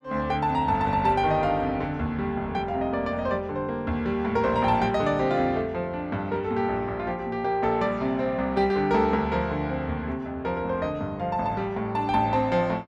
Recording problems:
none

